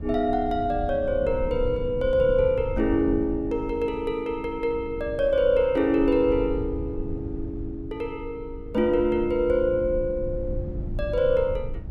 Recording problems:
rumble; below 110 Hz, SNR 11 dB

